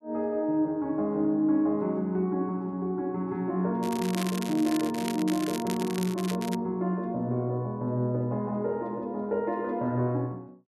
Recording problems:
crackle; from 4 to 6.5 s; loose cable, SNR 11 dB

